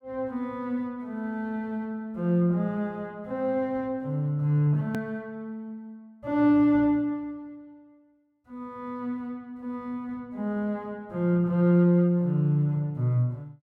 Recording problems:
click at an edit; at 5 s

